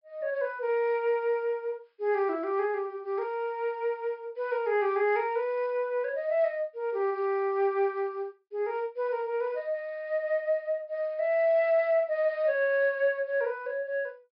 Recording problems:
low-pass filter; nothing above 5.5 kHz

